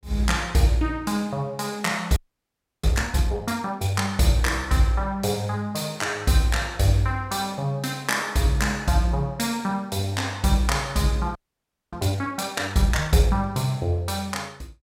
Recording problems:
audio freezing; at 2 s for 0.5 s and at 11 s for 0.5 s

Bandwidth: 16.5 kHz